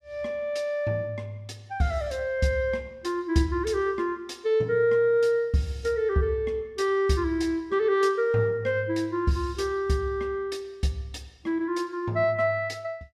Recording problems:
none

